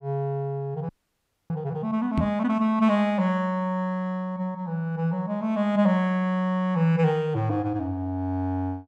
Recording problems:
audio freezing; at 1 s for 0.5 s
microphone thump; at 2 s; peak +3 dB vs average level

